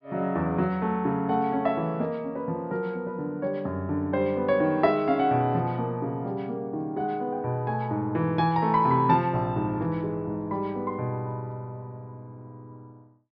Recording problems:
treble cut off; nothing above 5.5 kHz

